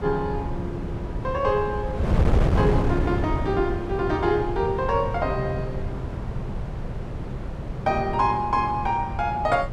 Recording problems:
wind noise; below 220 Hz, SNR 3 dB

